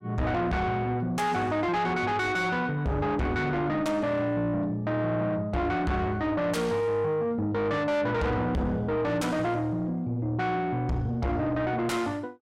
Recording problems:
distorted audio; soft clipping, signal-to-distortion ratio 7 dB

